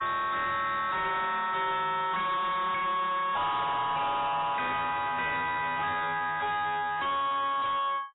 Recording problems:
lossy codec; AAC, log-spectral distance 4 dB, nothing above 3.8 kHz
distortion; soft clipping, signal-to-distortion ratio 6 dB

